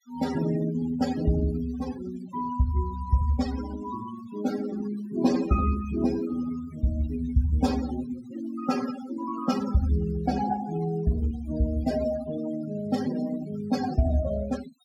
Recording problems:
denoising artefacts; signal-to-artefact ratio 13 dB

